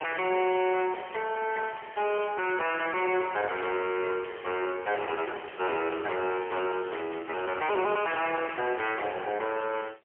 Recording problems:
telephone audio; 320 Hz to 3.1 kHz, AMR-NB, then MP3
distorted audio; soft clipping, signal-to-distortion ratio 5 dB

